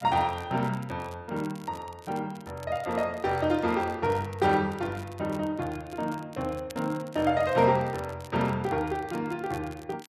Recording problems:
crackling; vinyl, SNR 24 dB

